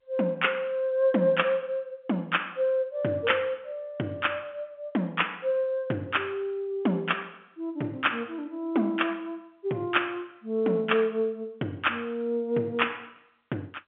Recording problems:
phone line; 150 Hz to 3.5 kHz, G.711

